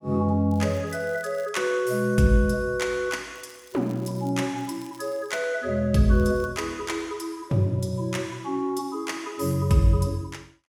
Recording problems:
crackling; 4 times, first at 0.5 s; loose cable, SNR 28 dB

